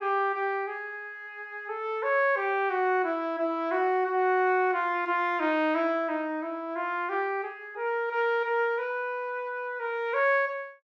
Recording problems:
none

